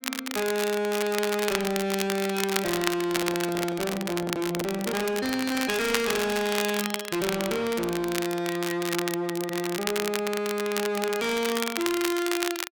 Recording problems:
distortion; hard clipping, signal-to-distortion ratio 6 dB
crackle; vinyl, SNR 5 dB
handling noise; from 3 to 6 s; peak -3 dB vs average level

